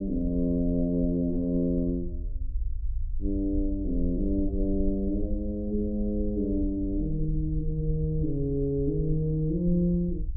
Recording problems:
low-frequency rumble; below 60 Hz, SNR 8 dB

